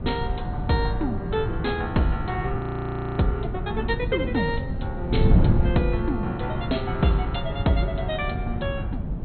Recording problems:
treble cut off; nothing above 4.3 kHz
hum; 50 Hz, harmonics up to 650 Hz, SNR 15 dB
wind noise; below 150 Hz, SNR 2 dB
frozen audio; at 2.5 s for 0.5 s

